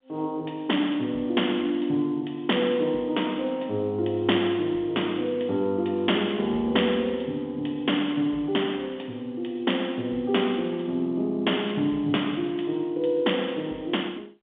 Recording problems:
phone line; 170 Hz to 3.6 kHz, G.711

